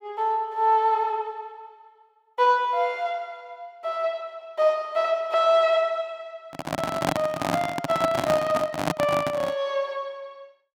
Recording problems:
microphone handling noise; from 6.5 to 9.5 s; peak +4 dB vs average level

